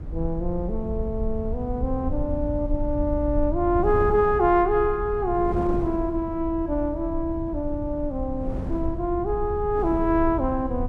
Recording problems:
rumble; below 76 Hz, SNR 8 dB
wind noise; below 310 Hz, SNR 14 dB

